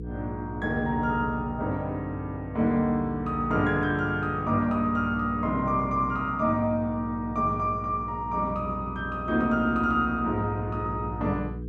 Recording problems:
hum; 60 Hz, harmonics up to 480 Hz, SNR 12 dB

